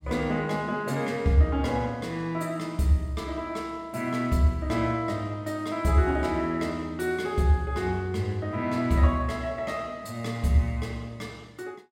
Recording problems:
none

